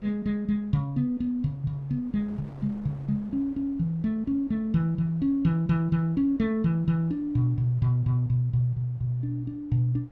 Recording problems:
wind on the microphone; below 470 Hz, SNR 25 dB

